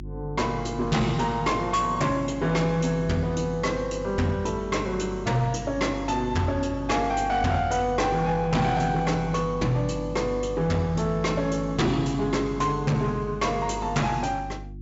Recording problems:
treble missing; nothing above 8 kHz
distorted audio; hard clipping, signal-to-distortion ratio 8 dB
hum; 50 Hz, harmonics up to 350 Hz, SNR 13 dB

